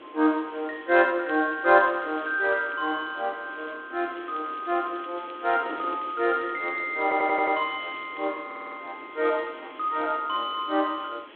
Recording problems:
phone line; 260 Hz to 3.5 kHz, G.726
background hiss; SNR 27 dB
wind on the microphone; below 1.1 kHz, SNR 20 dB
crackle; 4 times, first at 1.5 s; loose cable, SNR 27 dB
audio stuttering; at 7 s and at 8.5 s

